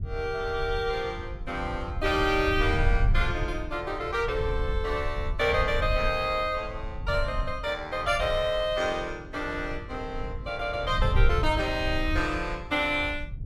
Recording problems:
rumble; below 76 Hz, SNR 6 dB

